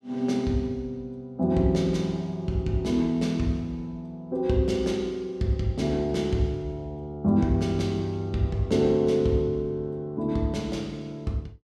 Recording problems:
none

